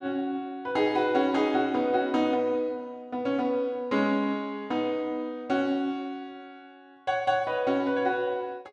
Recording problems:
none

